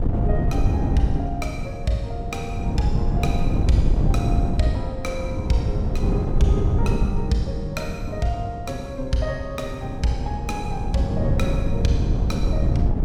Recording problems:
wind on the microphone; below 150 Hz, SNR -3 dB

